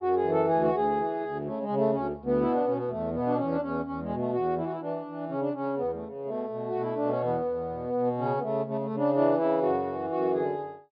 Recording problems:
treble cut off; nothing above 5.5 kHz

